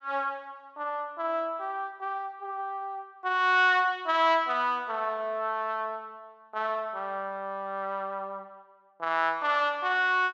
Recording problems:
none

